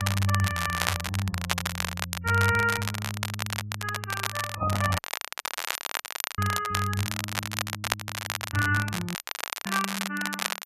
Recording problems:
codec artefacts; Vorbis, then MP3, log-spectral distance 2 dB
crackling; vinyl, SNR 2 dB
microphone handling noise; at 4.5 s; peak -1 dB vs average level
audio cutting out; at 5 s for 1.5 s and at 9 s for 0.5 s

